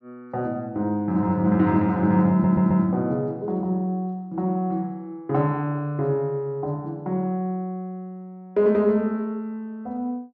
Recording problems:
stutter; at 2.5 s

